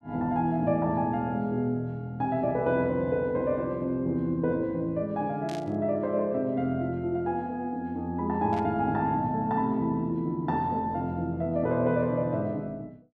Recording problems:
static burst; at 5.5 s and at 8.5 s; peak -11 dB vs average level

